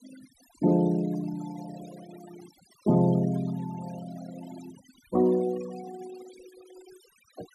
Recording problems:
noise reduction artefacts; signal-to-artefact ratio 20 dB

